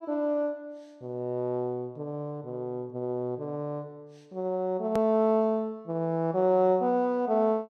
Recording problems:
click at an edit; at 5 s

